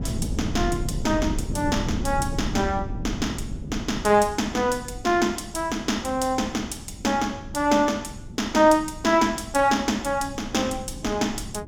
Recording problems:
wind noise; below 200 Hz, SNR 10 dB

